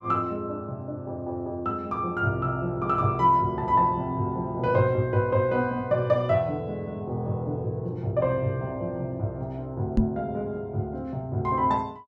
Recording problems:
microphone thump; at 10 s; peak +7 dB vs average level

